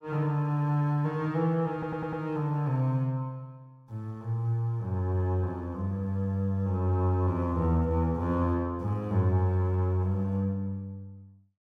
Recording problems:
stutter; at 1.5 s

